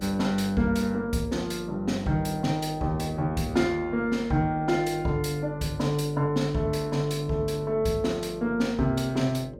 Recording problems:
hum; 50 Hz, harmonics up to 600 Hz, SNR 16 dB

